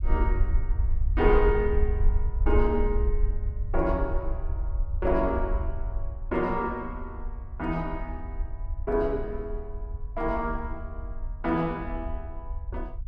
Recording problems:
low-frequency rumble; below 60 Hz, SNR 2 dB

